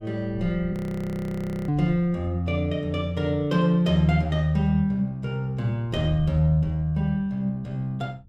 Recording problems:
wind noise; below 120 Hz, SNR 17 dB
frozen audio; at 0.5 s for 1 s

